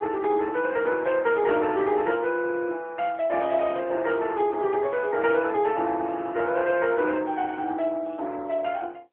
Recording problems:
phone line; 260 Hz to 3.3 kHz, AMR-NB

